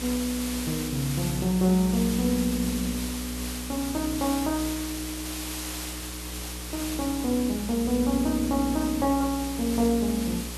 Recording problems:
hum; 60 Hz, harmonics up to 600 Hz, SNR 11 dB
background hiss; slope +1 dB per octave, SNR 8 dB

